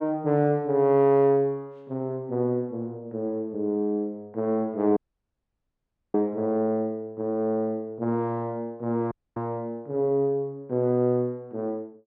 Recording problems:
dropout; at 5 s for 1 s and at 9 s

